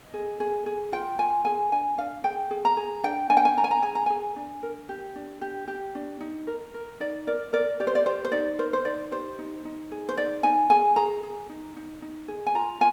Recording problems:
background hiss; slope -5 dB per octave, SNR 26 dB

